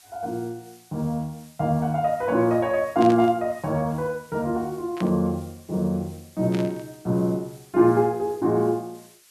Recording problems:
hiss; slope +2 dB per octave, SNR 27 dB
burst of static; at 3 s, at 5 s and at 6.5 s; peak -8 dB vs average level

